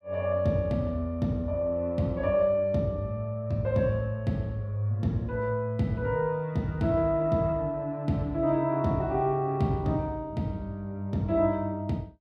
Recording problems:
none

